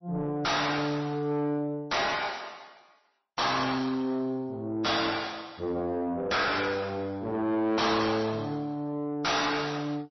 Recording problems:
lossy codec; MP3, log-spectral distance 5 dB, nothing above 5.8 kHz
distortion; soft clipping, signal-to-distortion ratio 5 dB

